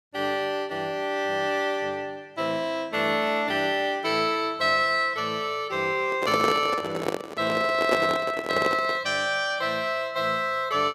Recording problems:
microphone handling noise; from 6 to 9 s; peak +4 dB vs average level

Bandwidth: 14.5 kHz